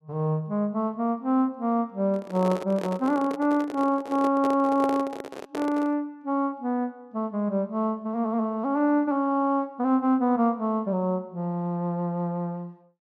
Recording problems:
microphone handling noise; from 2 to 6 s; peak -2 dB vs average level

